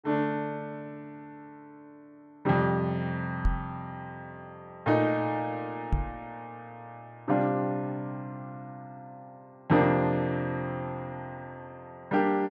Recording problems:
microphone bump; at 3.5 s and at 6 s; peak +5 dB vs average level

